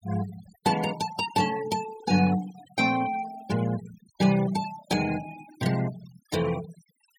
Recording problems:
noise reduction artefacts; signal-to-artefact ratio 15 dB

